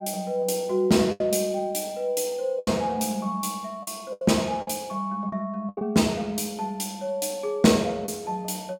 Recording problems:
packet loss; 5% of the sound replaced, filled with the last packet

